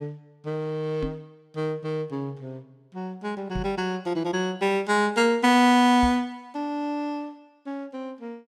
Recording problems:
microphone bump; at 1 s, at 3.5 s and at 6 s; peak -3 dB vs average level

